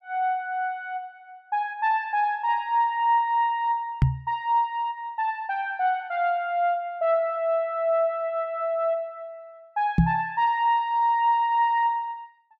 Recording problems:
microphone thump; at 4 s and at 10 s; peak +9 dB vs average level

